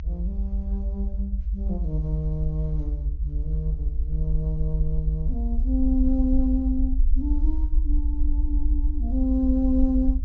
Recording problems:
treble missing; nothing above 6.7 kHz
rumble; below 54 Hz, SNR -2 dB

